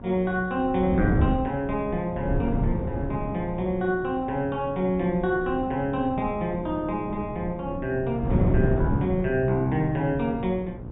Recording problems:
treble missing; nothing above 4 kHz
hum; 60 Hz, harmonics up to 1.1 kHz, SNR 17 dB
wind on the microphone; below 230 Hz, SNR 4 dB

